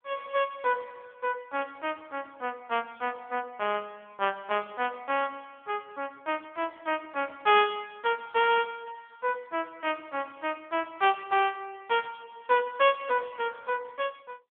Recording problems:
phone line; 300 Hz to 3.4 kHz, AMR-NB
static burst; at 12 s; peak -17 dB vs average level

